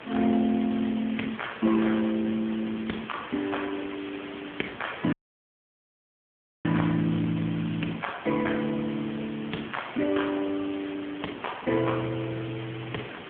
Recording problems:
phone line; 130 Hz to 3.3 kHz, AMR-NB
background hiss; SNR 12 dB
dropout; at 5 s for 1.5 s

